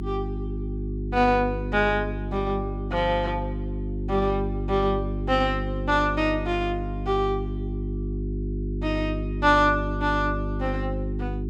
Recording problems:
hum; 50 Hz, harmonics up to 400 Hz, SNR 5 dB

